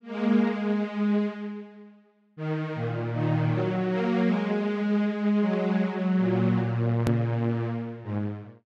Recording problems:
edit click; at 7 s

